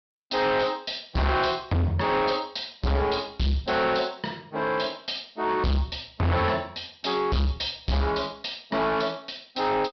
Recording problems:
treble cut off; nothing above 5.5 kHz
distorted audio; hard clipping, signal-to-distortion ratio 6 dB

